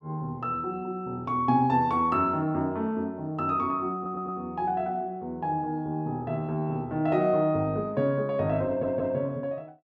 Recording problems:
stutter; at 4 s and at 8.5 s

